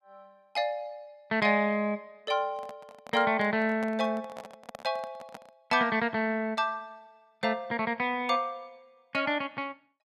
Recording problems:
microphone handling noise; from 2.5 to 5.5 s; peak -8 dB vs average level

